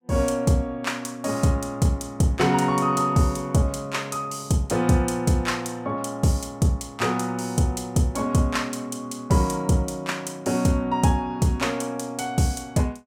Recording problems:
none

